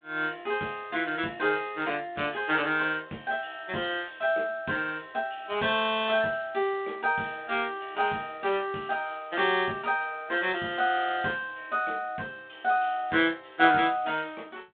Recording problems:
phone line; 170 Hz to 3.7 kHz, G.726

